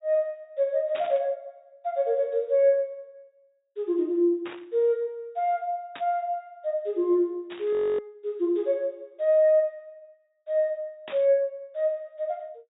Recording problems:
treble missing; nothing above 4 kHz
static burst; 5 times, first at 1 s; peak -9 dB vs average level
frozen audio; at 7.5 s

